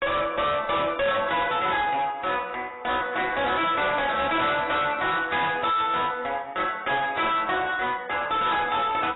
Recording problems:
codec artefacts; AAC, log-spectral distance 5 dB, nothing above 3.8 kHz
distorted audio; hard clipping, uneven, signal-to-distortion ratio 6 dB

